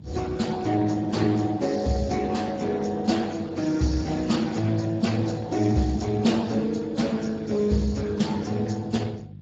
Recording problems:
codec artefacts; Vorbis, then Speex, log-spectral distance 4 dB, nothing above 7.3 kHz
hum; 50 Hz, harmonics up to 350 Hz, SNR 20 dB

